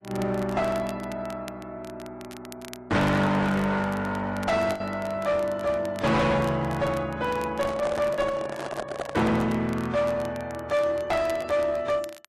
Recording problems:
lossy compression; AAC, log-spectral distance 2 dB, nothing above 10.7 kHz
distorted audio; hard clipping, uneven, signal-to-distortion ratio 7 dB
crackle; vinyl, SNR 21 dB
lost packets; 1.2% of the sound replaced, filled with the last packet
microphone handling noise; from 7.5 to 9.5 s; peak -2 dB vs average level

